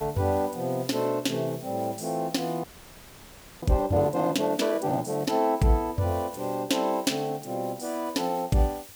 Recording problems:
background hiss; slope 0 dB per octave, SNR 19 dB
audio freezing; at 2.5 s for 1 s

